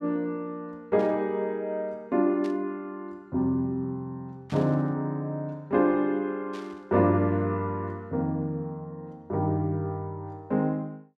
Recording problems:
burst of static; 4 times, first at 1 s; peak -13 dB vs average level

